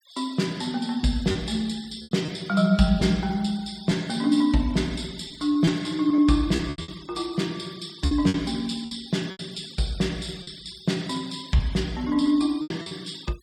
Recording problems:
denoising artefacts; signal-to-artefact ratio 23 dB
packet loss; 7% of the sound replaced, filled with repeated pitch periods

